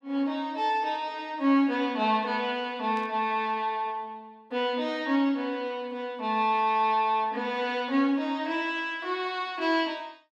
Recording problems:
static burst; at 3 s; peak -14 dB vs average level

